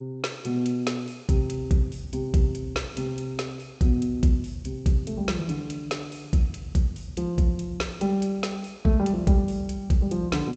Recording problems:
lossy codec; G.722, log-spectral distance 3 dB, nothing above 7.6 kHz

